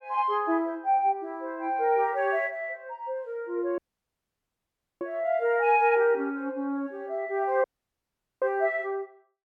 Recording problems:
dropout; at 4 s for 1 s and at 7.5 s for 1 s

